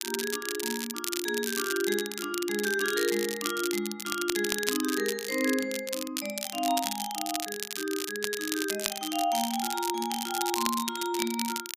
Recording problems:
crackle; vinyl, SNR 3 dB

